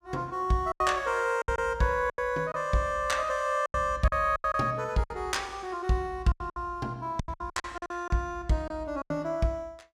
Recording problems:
lost packets; 11% of the sound replaced, filled with silence

